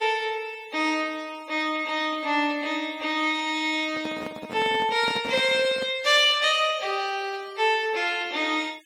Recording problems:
noise reduction artefacts; signal-to-artefact ratio 24 dB
microphone handling noise; from 4 to 6 s; peak -5 dB vs average level

